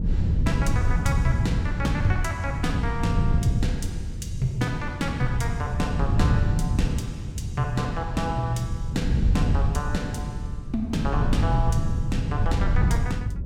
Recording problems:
wind noise; below 130 Hz, SNR -3 dB

